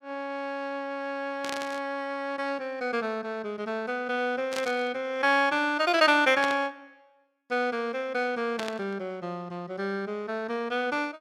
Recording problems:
burst of static; 4 times, first at 1.5 s; peak -1 dB vs average level

